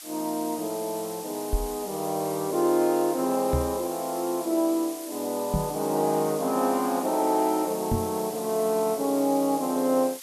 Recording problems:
hiss; SNR 12 dB
knock on the microphone; 4 times, first at 1.5 s; peak +3 dB vs average level

